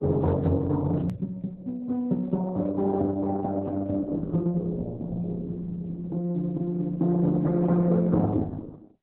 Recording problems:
lossy compression; Opus, then Opus, log-spectral distance 2 dB, nothing above 13.1 kHz
click at an edit; at 1 s

